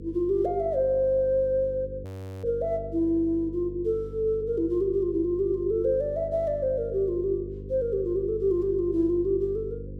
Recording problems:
electrical hum; 50 Hz, harmonics up to 500 Hz, SNR 13 dB
audio freezing; at 2 s

